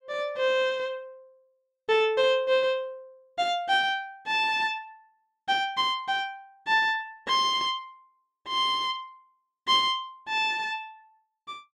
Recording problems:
none

